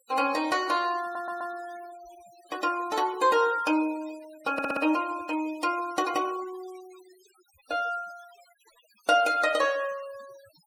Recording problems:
denoising artefacts; signal-to-artefact ratio 20 dB
stutter; at 1 s and at 4.5 s

